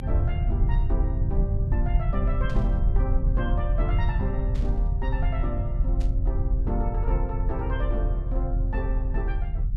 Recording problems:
rumble; below 80 Hz, strongest tone 40 Hz, SNR -8 dB
static burst; at 2.5 s, at 4.5 s and at 6 s; peak -8 dB vs average level

